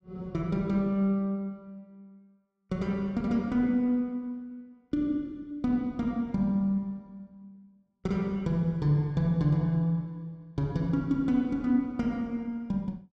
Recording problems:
none

